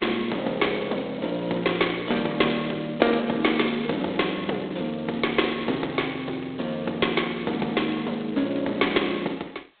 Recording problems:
telephone audio; 260 Hz to 4 kHz, G.726

